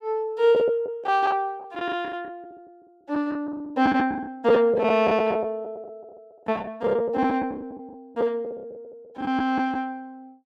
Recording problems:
packet loss; 11% of the sound replaced, filled with the last packet

